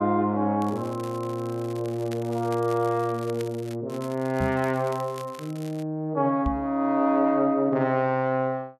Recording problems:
crackle; from 0.5 to 4 s and from 4 to 6 s; loose cable, SNR 21 dB
microphone thump; at 4.5 s and at 6.5 s; peak +1 dB vs average level

